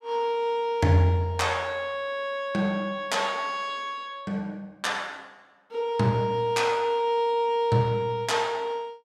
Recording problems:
none

